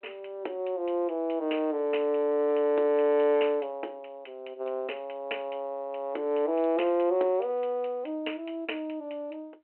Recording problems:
phone line; 280 Hz to 3.1 kHz, G.726

